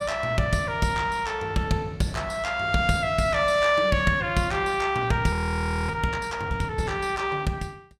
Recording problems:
audio freezing; at 5.5 s for 0.5 s

